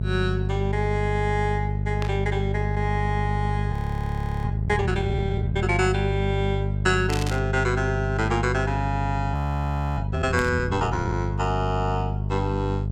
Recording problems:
mains hum; 50 Hz, harmonics up to 450 Hz, SNR 0 dB
burst of static; at 2 s, at 7 s and at 10 s; peak -1 dB vs average level
audio freezing; at 3.5 s for 0.5 s and at 9.5 s for 0.5 s

